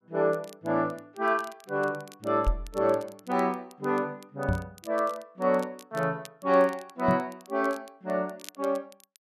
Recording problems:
crackling; vinyl, SNR 24 dB
knock on the microphone; at 2.5 s, at 4.5 s and at 7 s; peak +5 dB vs average level

